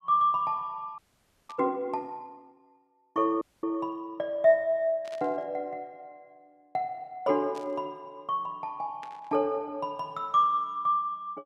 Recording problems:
audio freezing; at 1 s for 0.5 s and at 3.5 s
burst of static; 4 times, first at 1.5 s; peak -14 dB vs average level

